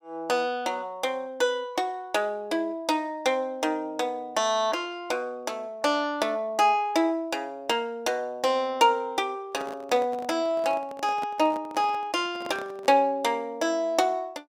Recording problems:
microphone handling noise; from 9.5 to 13 s; peak -8 dB vs average level

